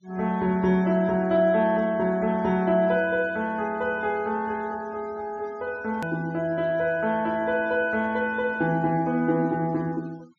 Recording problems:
treble missing; nothing above 7.1 kHz
noise reduction artefacts; signal-to-artefact ratio 27 dB
edit click; at 6 s

